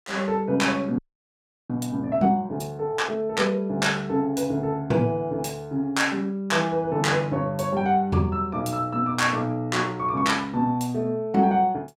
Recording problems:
audio freezing; at 1 s for 0.5 s

